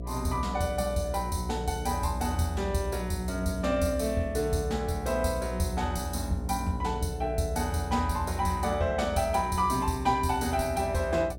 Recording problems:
hum; 60 Hz, harmonics up to 720 Hz, SNR 8 dB

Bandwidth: 16.5 kHz